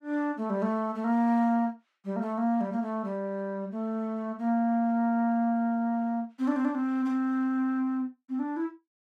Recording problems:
none

